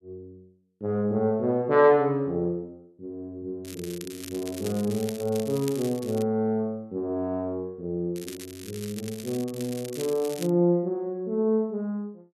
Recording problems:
crackling; from 3.5 to 6 s and from 8 to 11 s; loose cable, SNR 15 dB

